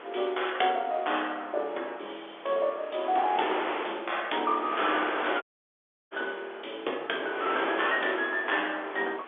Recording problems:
phone line; 320 Hz to 3.5 kHz, G.711
wind on the microphone; below 1.9 kHz, SNR 6 dB
dropout; at 5.5 s for 0.5 s

